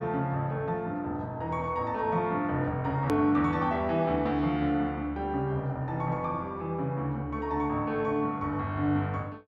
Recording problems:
edit click; at 3 s

